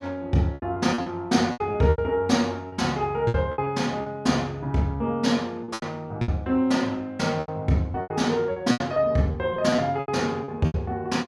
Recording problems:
packet loss; 13% of the sound replaced, filled with repeated pitch periods

